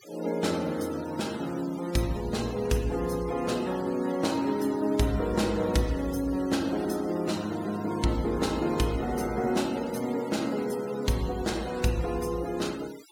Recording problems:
noise reduction artefacts; signal-to-artefact ratio 17 dB

